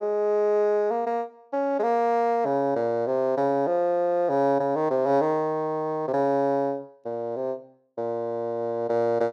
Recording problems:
none

